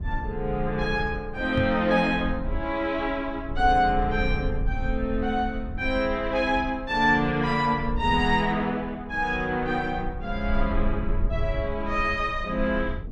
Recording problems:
low-frequency rumble; below 66 Hz, SNR 9 dB
microphone thump; at 1.5 s; peak +2 dB vs average level

